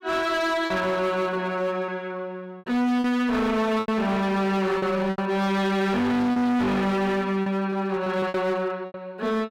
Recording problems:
distorted audio; hard clipping, signal-to-distortion ratio 7 dB
packet loss; 7% of the sound replaced, filled with repeated pitch periods

